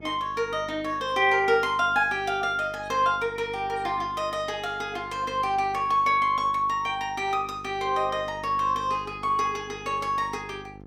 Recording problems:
hum; 50 Hz, harmonics up to 950 Hz, SNR 20 dB

